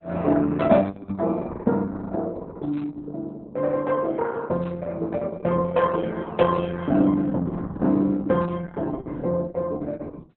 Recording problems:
codec artefacts; Opus, log-spectral distance 3 dB

